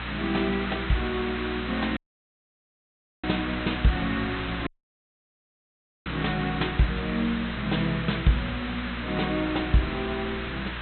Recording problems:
low-pass filter; nothing above 4.1 kHz
hum; 60 Hz, harmonics up to 720 Hz, SNR 10 dB
background hiss; SNR 6 dB
wind on the microphone; below 480 Hz, SNR 24 dB
audio cutting out; at 2 s for 1.5 s and at 4.5 s for 1.5 s

